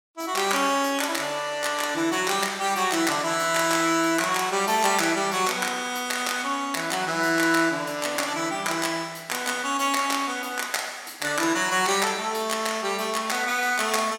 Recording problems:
none

